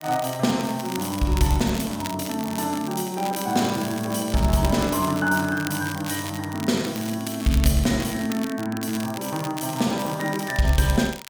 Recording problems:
crackle; vinyl, SNR 13 dB

